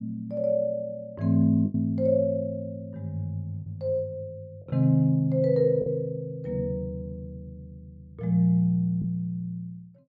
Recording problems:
packet loss; 2% of the sound replaced, filled with the last packet

